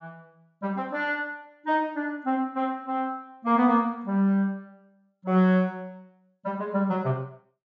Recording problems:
low-pass filter; nothing above 7.3 kHz

